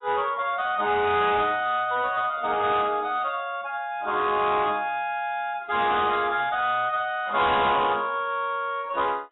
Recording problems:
lossy compression; AAC, log-spectral distance 3 dB, nothing above 3.8 kHz
distorted audio; soft clipping, signal-to-distortion ratio 11 dB

